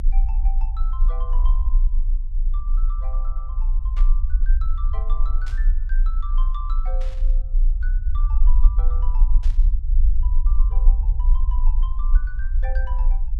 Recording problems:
rumble; below 42 Hz, strongest tone 28 Hz, SNR -18 dB
burst of static; 4 times, first at 4 s; peak +1 dB vs average level

